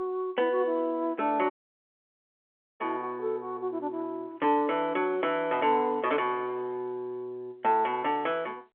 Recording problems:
telephone audio; 300 Hz to 3.3 kHz, G.711
audio cutting out; at 1.5 s for 1.5 s

